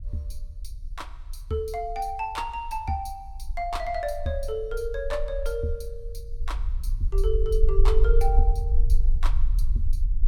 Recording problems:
rumble; below 44 Hz, strongest tone 18 Hz, SNR -3 dB

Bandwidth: 17 kHz